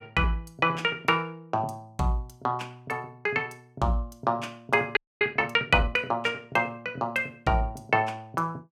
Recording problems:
frozen audio; at 5 s

